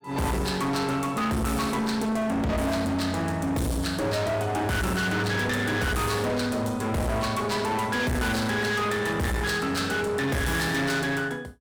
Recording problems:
distorted audio; hard clipping, uneven, signal-to-distortion ratio 5 dB

